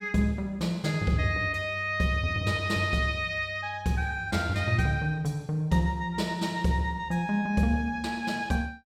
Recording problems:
none

